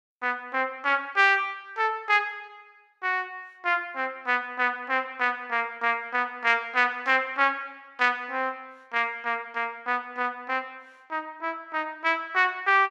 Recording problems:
none

